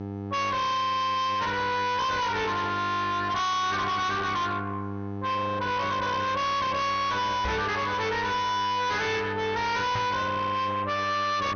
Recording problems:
codec artefacts; MP2, log-spectral distance 2 dB, nothing above 6.3 kHz
distorted audio; soft clipping, signal-to-distortion ratio 6 dB
electrical hum; 50 Hz, harmonics up to 1.4 kHz, SNR 9 dB
microphone thump; at 7.5 s and at 10 s; peak +1 dB vs average level

